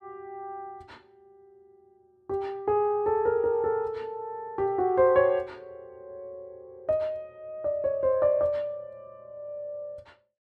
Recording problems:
none

